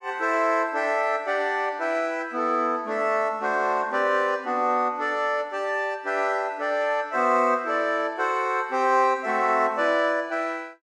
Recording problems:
none

